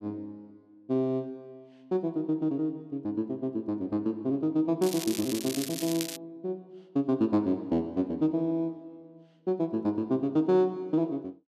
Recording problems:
crackle; from 5 to 6 s; loose cable, SNR 7 dB

